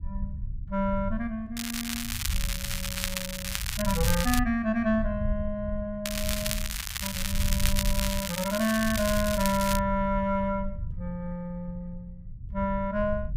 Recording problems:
low-frequency rumble; below 82 Hz, SNR 6 dB
crackle; from 1.5 to 4.5 s and from 6 to 10 s; loose cable, SNR 2 dB

